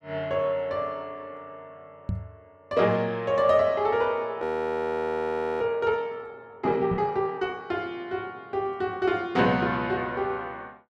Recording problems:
microphone bump; at 2 s and at 7 s; peak 0 dB vs average level
audio freezing; at 4.5 s for 1 s

